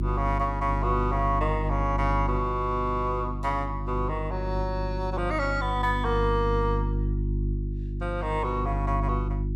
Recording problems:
hum; 50 Hz, harmonics up to 350 Hz, SNR 2 dB

